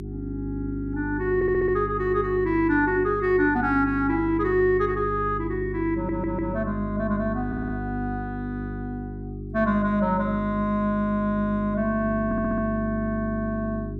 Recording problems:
hum; 50 Hz, harmonics up to 400 Hz, SNR 8 dB
stutter; 4 times, first at 1.5 s

